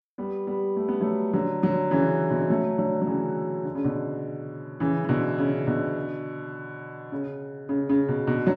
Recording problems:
none

